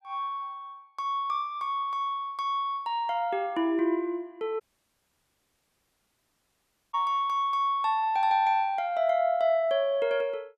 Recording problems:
dropout; at 4.5 s for 2.5 s

